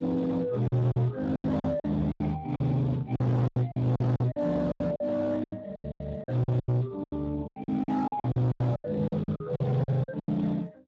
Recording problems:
lossy codec; Speex, log-spectral distance 3 dB
distorted audio; hard clipping, signal-to-distortion ratio 6 dB
lost packets; 18% of the sound replaced, filled with silence

